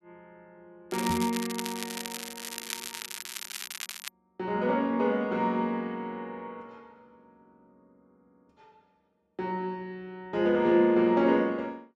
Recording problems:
crackle; from 1 to 4 s; loose cable, SNR 9 dB
microphone thump; at 1 s; peak -2 dB vs average level

